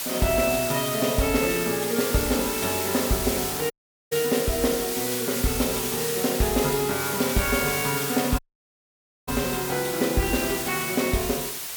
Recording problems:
background hiss; slope +1 dB per octave, SNR 3 dB
dropout; at 3.5 s and at 8.5 s for 1 s

